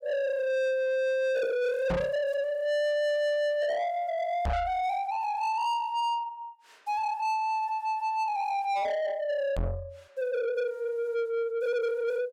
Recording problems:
distortion; soft clipping, signal-to-distortion ratio 7 dB
knock on the microphone; at 2 s, at 4.5 s and at 9.5 s; peak +6 dB vs average level

